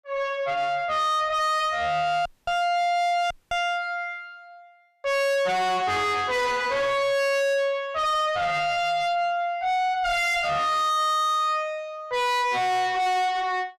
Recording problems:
distorted audio; soft clipping, signal-to-distortion ratio 5 dB
dropout; at 2.5 s and at 3.5 s

